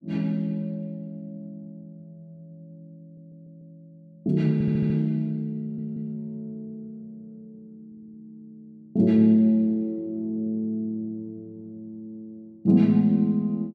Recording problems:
audio stuttering; 4 times, first at 3 s

